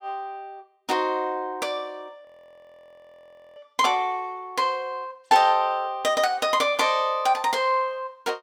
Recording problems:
frozen audio; at 2.5 s for 1.5 s

